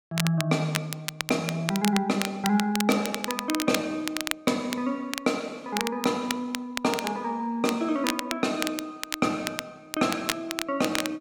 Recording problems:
crackling; vinyl, SNR 5 dB

